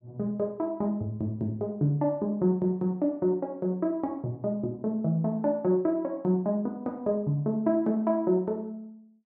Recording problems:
none

